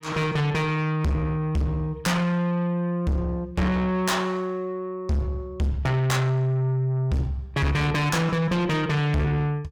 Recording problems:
distorted audio; soft clipping, signal-to-distortion ratio 7 dB

